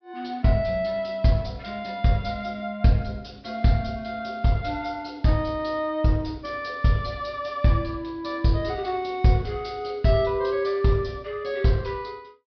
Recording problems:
treble missing; nothing above 5.5 kHz

